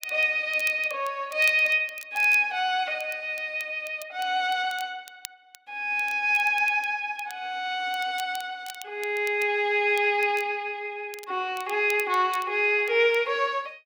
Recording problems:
crackling; vinyl, SNR 21 dB

